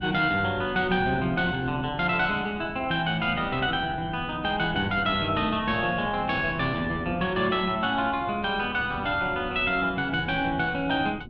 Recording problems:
wind on the microphone; below 280 Hz, SNR 15 dB

